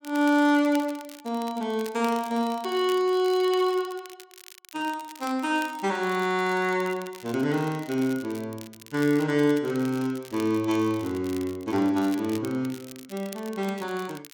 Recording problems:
crackling; vinyl, SNR 20 dB

